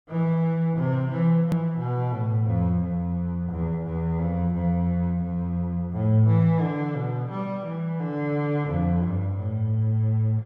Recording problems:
click at an edit; at 1.5 s

